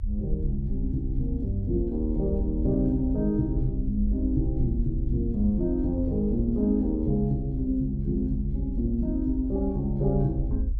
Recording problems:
rumble; below 64 Hz, SNR 5 dB

